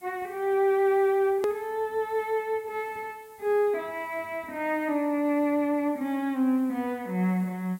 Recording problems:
background hiss; SNR 28 dB
click at an edit; at 1.5 s

